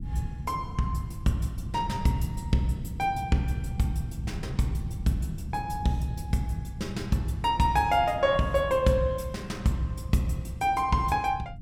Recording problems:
rumble; below 160 Hz, SNR 10 dB

